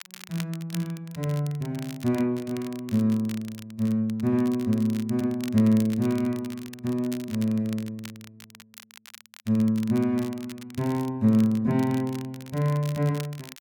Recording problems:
crackle; vinyl, SNR 19 dB

